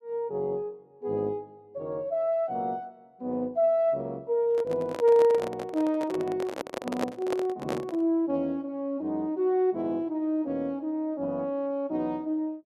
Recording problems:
handling noise; from 4.5 to 8 s; peak +2 dB vs average level

